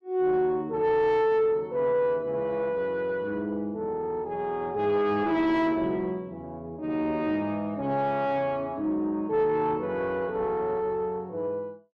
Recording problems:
distortion; soft clipping, signal-to-distortion ratio 9 dB

